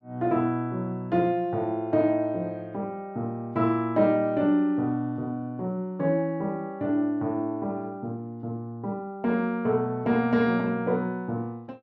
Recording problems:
none

